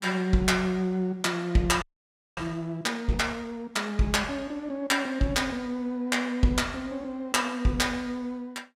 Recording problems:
frozen audio; at 2 s for 0.5 s

